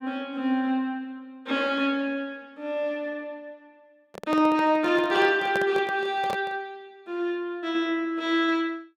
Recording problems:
handling noise; from 4 to 6.5 s; peak -2 dB vs average level

